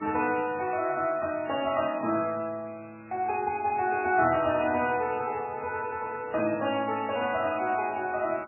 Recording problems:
lossy compression; MP3, log-spectral distance 4 dB, nothing above 2.5 kHz

